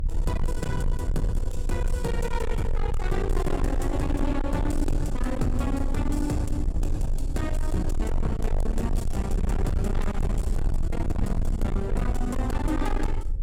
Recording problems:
distortion; soft clipping, signal-to-distortion ratio 7 dB
hum; 60 Hz, harmonics up to 540 Hz, SNR 22 dB
rumble; below 62 Hz, strongest tone 24 Hz, SNR 1 dB

